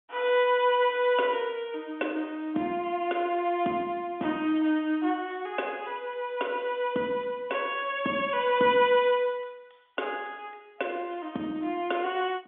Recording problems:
telephone audio; 190 Hz to 3.5 kHz, G.711

